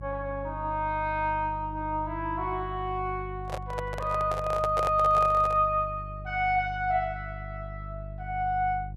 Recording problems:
hum; 50 Hz, harmonics up to 350 Hz, SNR 12 dB
microphone handling noise; from 3.5 to 5.5 s; peak 0 dB vs average level

